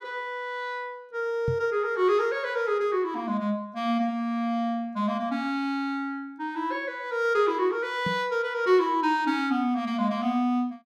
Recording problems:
microphone bump; at 1.5 s and at 8 s; peak 0 dB vs average level

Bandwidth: 14.5 kHz